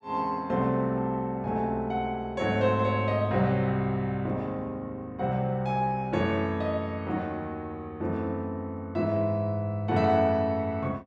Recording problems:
none

